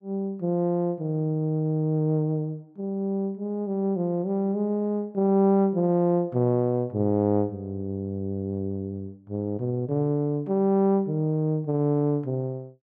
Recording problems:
none

